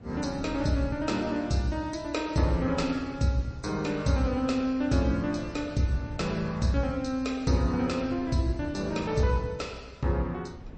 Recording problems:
codec artefacts; MP3, log-spectral distance 3 dB, nothing above 8.2 kHz
wind on the microphone; below 220 Hz, SNR 16 dB

